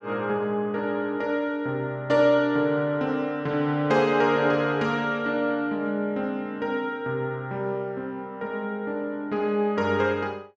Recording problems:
none

